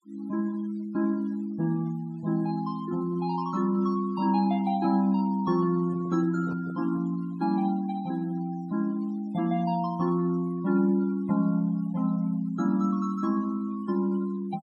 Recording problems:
denoising artefacts; signal-to-artefact ratio 25 dB
handling noise; from 5.5 to 7 s; peak -9 dB vs average level

